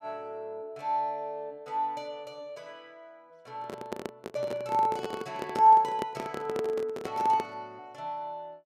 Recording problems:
handling noise; from 3.5 to 7.5 s; peak -1 dB vs average level

